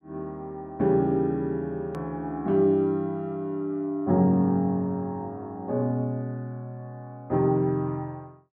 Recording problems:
hard cut with a click; at 2 s

